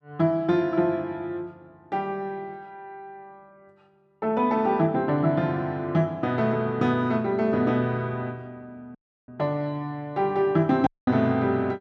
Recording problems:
audio cutting out; at 9 s and at 11 s

